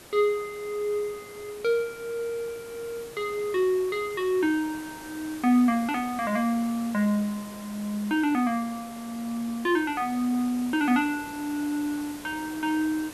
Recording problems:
background hiss; slope -4 dB per octave, SNR 16 dB

